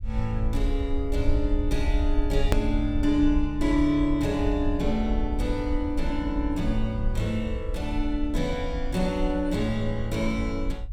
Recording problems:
low-frequency rumble; below 56 Hz, SNR 4 dB
edit click; at 2.5 s

